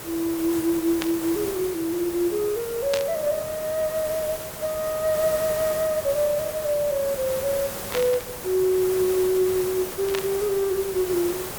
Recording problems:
hiss; slope -4 dB per octave, SNR 8 dB
static burst; 4 times, first at 1 s; peak 0 dB vs average level

